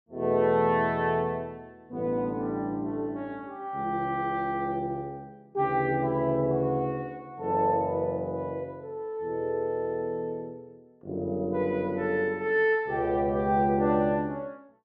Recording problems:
none

